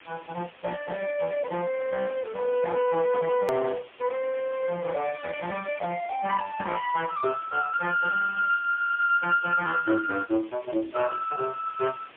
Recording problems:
telephone audio; 240 Hz to 2.8 kHz, AMR-NB, then MP3
distortion; hard clipping, uneven, signal-to-distortion ratio 13 dB
background hiss; SNR 23 dB
edit click; at 3.5 s

